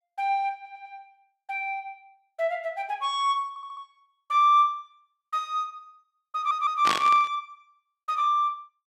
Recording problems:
stutter; at 0.5 s, at 3.5 s and at 6.5 s
burst of static; at 7 s; peak +2 dB vs average level

